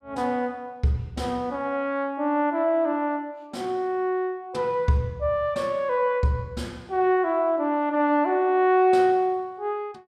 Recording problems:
none

